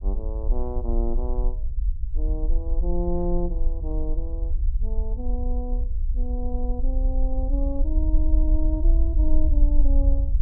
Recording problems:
rumble; below 50 Hz, SNR -7 dB

